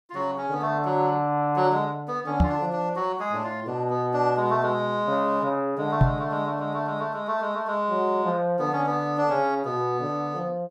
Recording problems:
microphone bump; at 2.5 s and at 6 s; peak +9 dB vs average level

